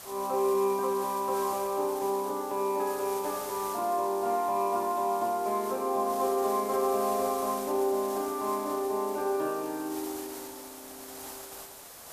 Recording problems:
background hiss; SNR 13 dB

